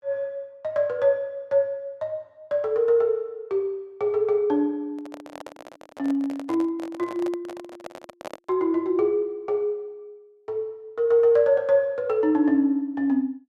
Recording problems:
microphone handling noise; from 5 to 8.5 s; peak -6 dB vs average level

